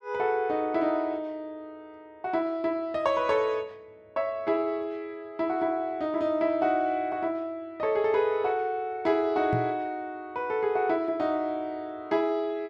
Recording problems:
microphone thump; at 9.5 s; peak +1 dB vs average level

